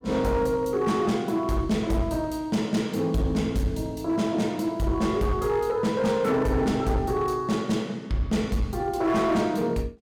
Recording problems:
distorted audio; hard clipping, signal-to-distortion ratio 12 dB

